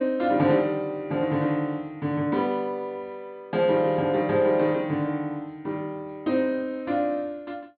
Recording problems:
treble missing; nothing above 4.6 kHz

